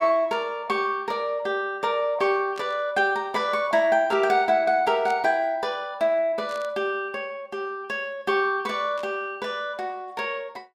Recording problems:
static burst; 4 times, first at 2.5 s; peak -12 dB vs average level

